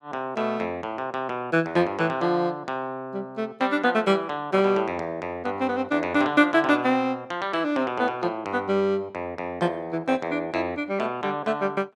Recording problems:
none

